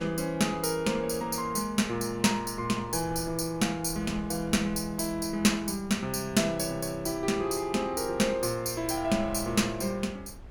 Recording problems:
wind noise; below 190 Hz, SNR 19 dB

